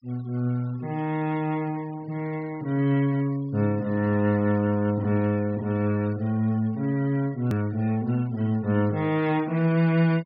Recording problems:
treble cut off; nothing above 5.2 kHz
noise reduction artefacts; signal-to-artefact ratio 25 dB
click at an edit; at 7.5 s

